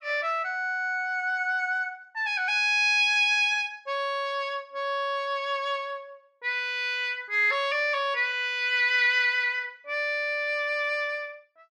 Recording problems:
none

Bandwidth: 13 kHz